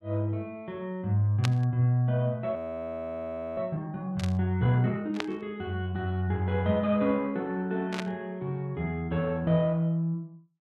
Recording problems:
burst of static; 4 times, first at 1.5 s; peak +1 dB vs average level
frozen audio; at 2.5 s for 1 s

